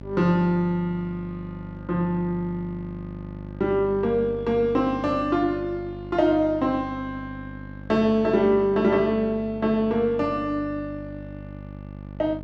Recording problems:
hum; 50 Hz, harmonics up to 900 Hz, SNR 15 dB

